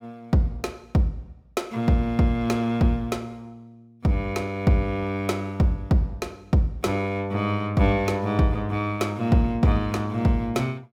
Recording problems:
none

